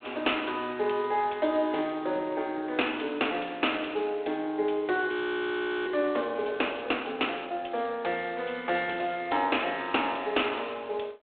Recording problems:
phone line; 280 Hz to 3.8 kHz, G.726
audio freezing; at 5 s for 0.5 s

